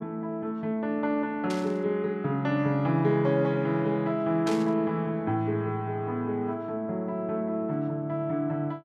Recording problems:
static burst; at 1.5 s and at 4.5 s; peak -5 dB vs average level

